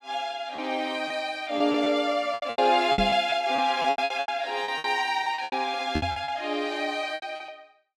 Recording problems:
packet loss; 15% of the sound replaced, filled with repeated pitch periods
microphone bump; at 3 s and at 6 s; peak +2 dB vs average level

